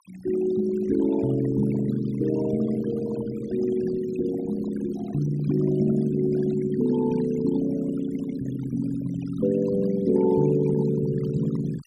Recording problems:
denoising artefacts; signal-to-artefact ratio 17 dB

